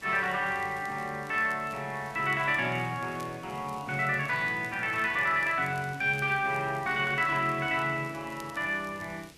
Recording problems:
background hiss; SNR 23 dB
crackling; vinyl, SNR 27 dB

